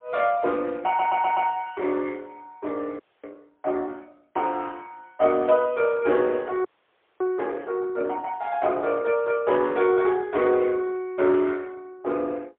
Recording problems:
phone line; 300 Hz to 3.8 kHz, AMR-NB, then MP3
stutter; at 1 s
audio freezing; at 3 s and at 6.5 s for 0.5 s

